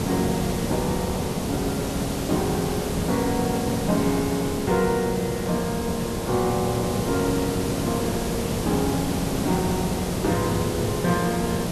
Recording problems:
hiss; SNR 1 dB

